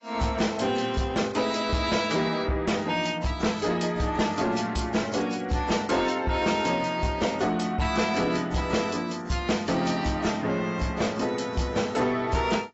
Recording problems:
lossy compression; AAC, log-spectral distance 4 dB, nothing above 7.6 kHz
distorted audio; soft clipping, signal-to-distortion ratio 11 dB

